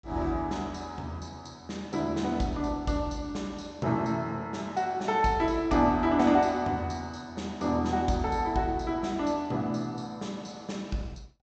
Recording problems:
low-pass filter; nothing above 8 kHz

